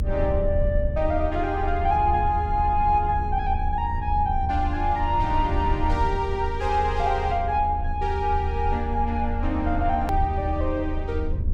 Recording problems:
electrical hum; 60 Hz, harmonics up to 720 Hz, SNR 17 dB
low-frequency rumble; below 78 Hz, strongest tone 26 Hz, SNR 4 dB
click at an edit; at 10 s

